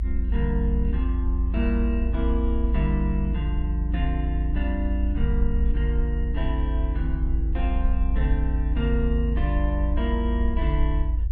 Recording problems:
low-frequency rumble; below 56 Hz, strongest tone 54 Hz, SNR -4 dB

